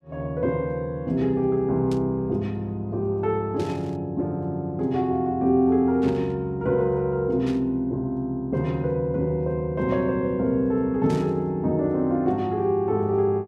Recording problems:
static burst; 5 times, first at 2 s; peak -13 dB vs average level

